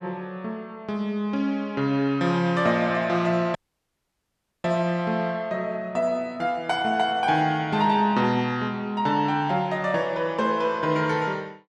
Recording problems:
audio cutting out; at 3.5 s for 1 s

